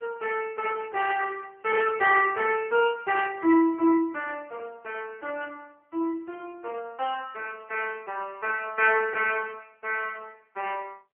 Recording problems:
telephone audio; 280 Hz to 3.1 kHz, AMR-NB

